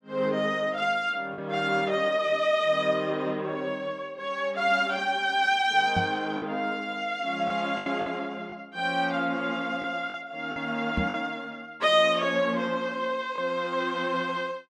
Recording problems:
packet loss; 3% of the sound replaced, filled with the last packet
microphone thump; at 6 s and at 11 s; peak +1 dB vs average level

